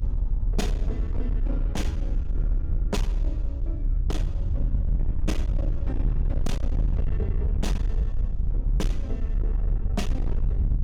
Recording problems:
distortion; hard clipping, signal-to-distortion ratio 8 dB
rumble; below 66 Hz, strongest tone 36 Hz, SNR -8 dB

